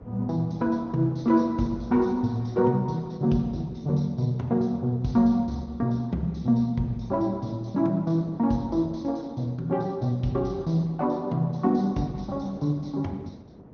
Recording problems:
low-pass filter; nothing above 6.2 kHz
lossy compression; Opus, then MP2, log-spectral distance 2 dB
wind on the microphone; below 390 Hz, SNR 22 dB

